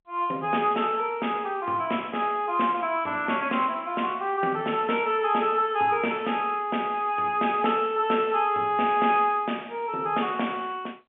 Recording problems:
telephone audio; 220 Hz to 3.3 kHz, G.711

